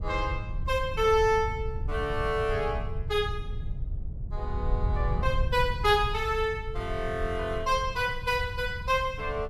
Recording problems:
wind on the microphone; below 88 Hz, SNR 6 dB

